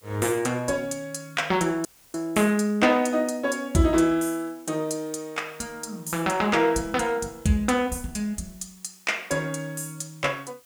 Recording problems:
background hiss; slope +1 dB per octave, SNR 27 dB
audio cutting out; at 2 s

